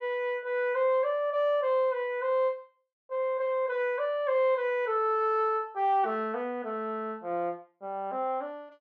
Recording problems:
none

